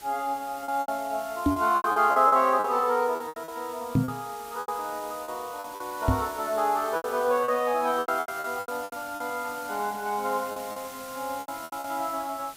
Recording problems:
hiss; slope -1 dB per octave, SNR 16 dB
packet loss; 13% of the sound replaced, filled with repeated pitch periods
knock on the microphone; at 1.5 s, at 4 s and at 6 s; peak +8 dB vs average level

